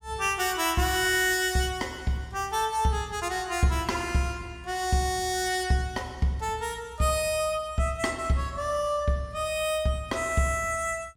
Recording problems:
none

